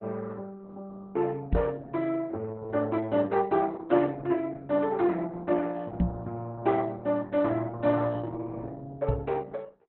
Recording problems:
lossy compression; Opus, log-spectral distance 3 dB, nothing above 4 kHz
microphone thump; at 1.5 s, at 6 s and at 9 s; peak +5 dB vs average level

